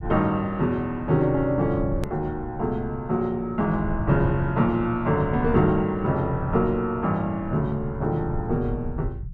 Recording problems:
low-frequency rumble; below 110 Hz, SNR 11 dB
click at an edit; at 2 s

